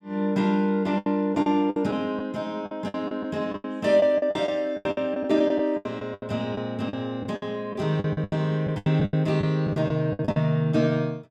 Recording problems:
packet loss; 15% of the sound replaced, filled with the last packet

